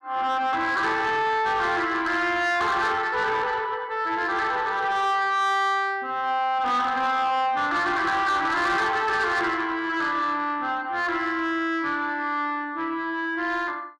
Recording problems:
distorted audio; soft clipping, signal-to-distortion ratio 12 dB

